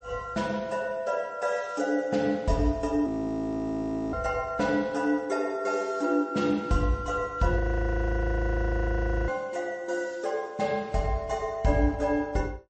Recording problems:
codec artefacts; MP3, log-spectral distance 2 dB, nothing above 8.2 kHz
frozen audio; at 3 s for 1 s and at 7.5 s for 1.5 s

